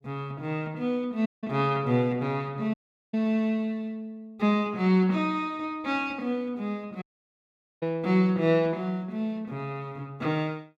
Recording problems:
dropout; at 1.5 s, at 2.5 s and at 7 s for 1 s

